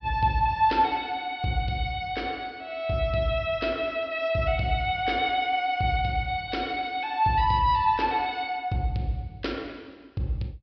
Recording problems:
treble missing; nothing above 5.5 kHz

